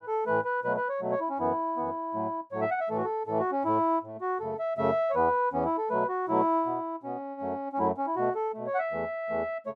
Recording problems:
none

